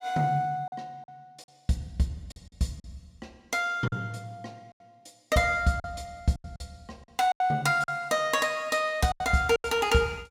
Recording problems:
lost packets; 8% of the sound replaced, filled with silence

